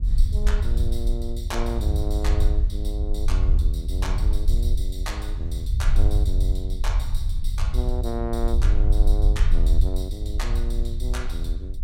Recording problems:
low-frequency rumble; below 60 Hz, SNR -9 dB

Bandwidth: 16 kHz